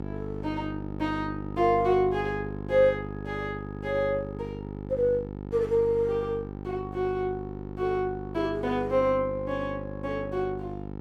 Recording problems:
electrical hum; 50 Hz, harmonics up to 1.4 kHz, SNR 9 dB

